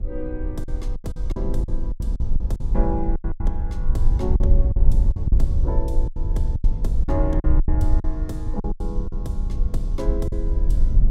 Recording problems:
rumble; below 58 Hz, SNR -7 dB
lost packets; 12% of the sound replaced, filled with silence

